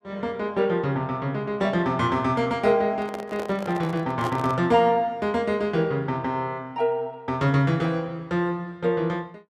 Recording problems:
microphone handling noise; from 3 to 4.5 s; peak -4 dB vs average level

